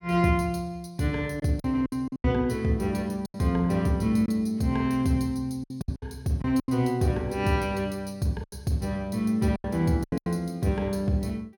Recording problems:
lost packets; 8% of the sound replaced, filled with silence

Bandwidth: 17.5 kHz